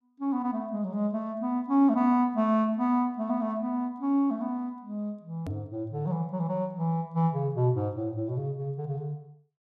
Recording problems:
hard cut with a click; at 5.5 s

